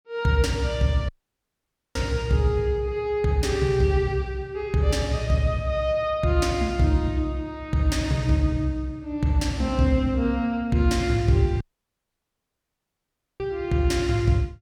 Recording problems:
dropout; at 1 s for 1 s and at 12 s for 2 s

